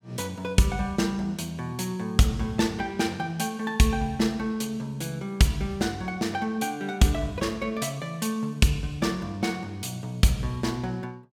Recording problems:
none

